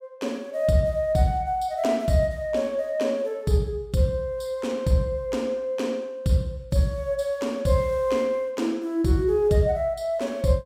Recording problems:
none

